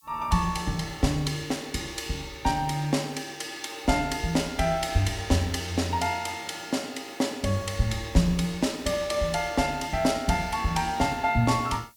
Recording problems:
hiss; SNR 28 dB

